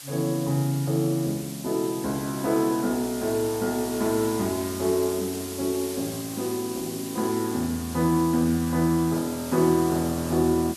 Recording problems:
hiss; slope +2 dB per octave, SNR 11 dB

